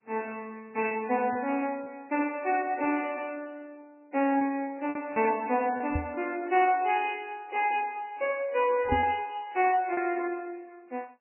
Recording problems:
lossy codec; MP2, then MP3, log-spectral distance 4 dB, nothing above 2.7 kHz
lost packets; 3% of the sound replaced, filled with repeated pitch periods
knock on the microphone; at 6 s and at 9 s; peak +3 dB vs average level

